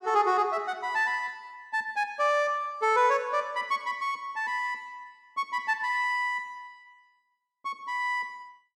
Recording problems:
none

